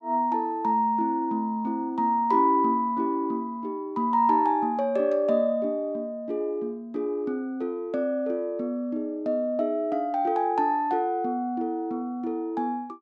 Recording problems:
none

